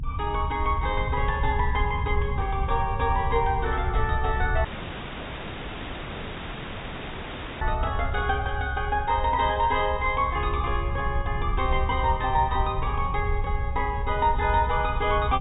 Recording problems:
treble cut off; nothing above 4 kHz
low-frequency rumble; below 82 Hz, SNR 4 dB
audio cutting out; at 4.5 s for 3 s

